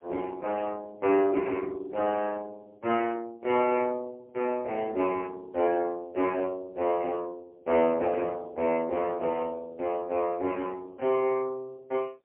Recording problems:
telephone audio; 320 Hz to 2.6 kHz, AMR-NB, then MP3

